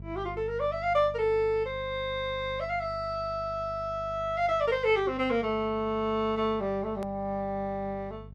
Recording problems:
electrical hum; 50 Hz, harmonics up to 450 Hz, SNR 17 dB
hard cut with a click; at 7 s

